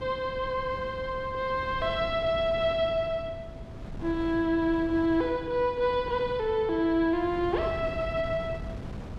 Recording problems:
wind noise; below 250 Hz, SNR 13 dB

